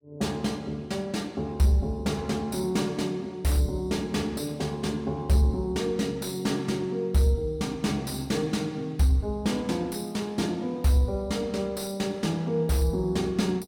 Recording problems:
distorted audio; soft clipping, signal-to-distortion ratio 11 dB

